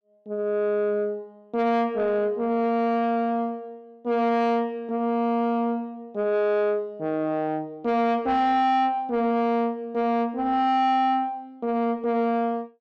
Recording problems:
distorted audio; soft clipping, signal-to-distortion ratio 11 dB

